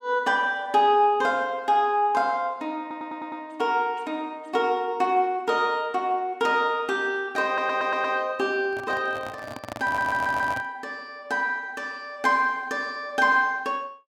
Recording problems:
audio stuttering; at 3 s, at 7.5 s and at 10 s
microphone handling noise; from 8.5 to 11 s; peak -6 dB vs average level

